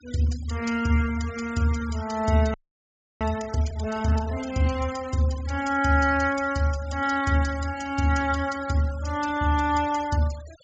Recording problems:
treble cut off; nothing above 8 kHz
denoising artefacts; signal-to-artefact ratio 18 dB
frozen audio; at 2.5 s for 0.5 s

